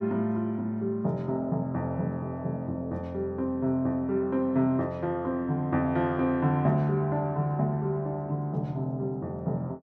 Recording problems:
none

